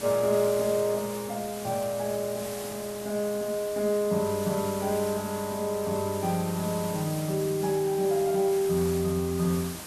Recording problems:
background hiss; slope -2 dB per octave, SNR 11 dB

